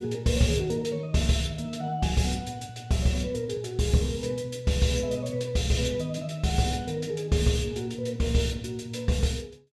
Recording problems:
none

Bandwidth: 13.5 kHz